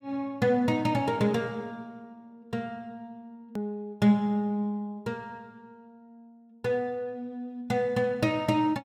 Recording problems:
hard cut with a click; at 3.5 s

